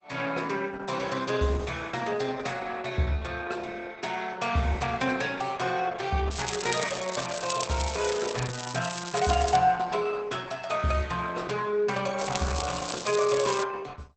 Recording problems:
lossy compression; Opus, log-spectral distance 8 dB, nothing above 8 kHz
crackling; from 6.5 to 9.5 s and from 12 to 14 s; loose cable, SNR 7 dB

